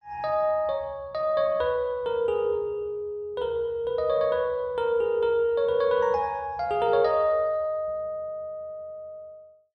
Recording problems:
none

